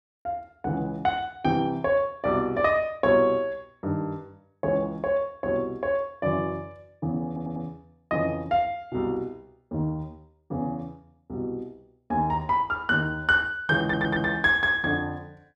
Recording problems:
audio stuttering; at 7.5 s and at 14 s

